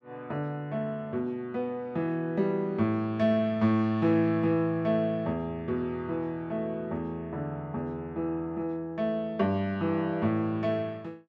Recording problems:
none

